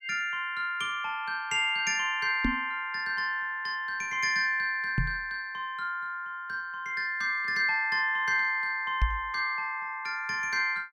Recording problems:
microphone bump; at 2.5 s, at 5 s and at 9 s; peak +5 dB vs average level

